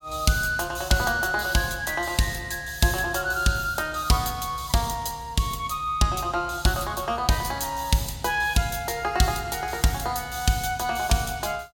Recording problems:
none

